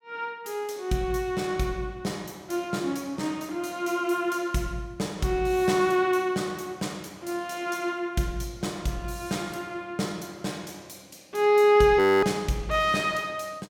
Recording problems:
frozen audio; at 12 s

